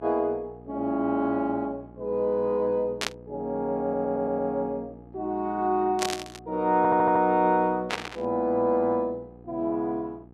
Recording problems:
electrical hum; 60 Hz, harmonics up to 1.2 kHz, SNR 22 dB
static burst; at 3 s, at 6 s and at 8 s; peak +2 dB vs average level
stutter; at 4 s and at 7 s

